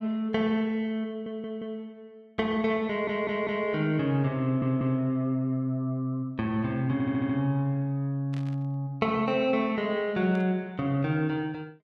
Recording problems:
audio stuttering; 4 times, first at 1 s
static burst; at 8.5 s and at 10 s; peak -15 dB vs average level

